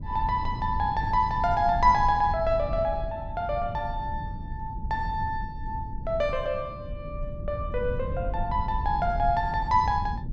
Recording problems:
low-pass filter; nothing above 7.8 kHz
rumble; below 110 Hz, SNR 8 dB

